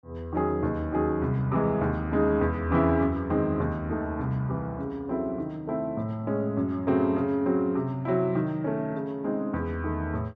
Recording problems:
none

